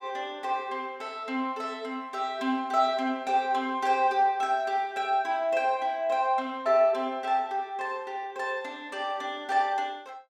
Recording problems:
none

